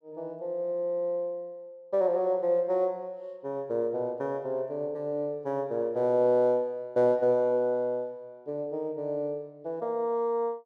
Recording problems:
none

